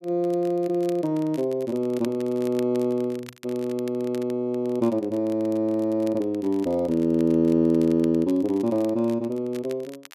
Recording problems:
crackling; vinyl, SNR 25 dB

